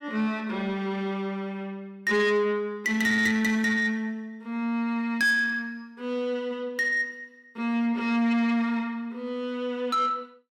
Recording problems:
distorted audio; soft clipping, signal-to-distortion ratio 11 dB

